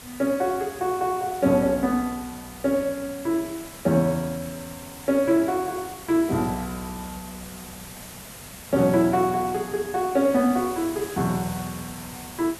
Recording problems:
hiss; SNR 15 dB

